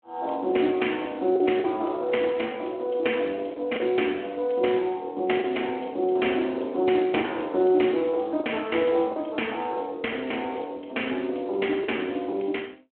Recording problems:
telephone audio; 260 Hz to 3.2 kHz, Speex
packet loss; 3% of the sound replaced, filled with the last packet

